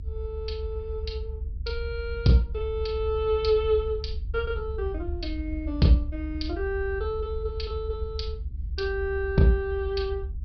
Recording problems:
treble missing; nothing above 5.5 kHz
low-frequency rumble; below 72 Hz, SNR 7 dB

